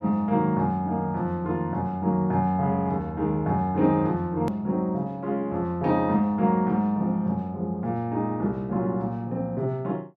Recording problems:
edit click; at 4.5 s

